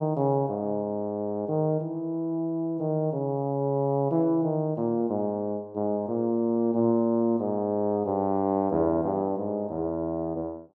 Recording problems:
none

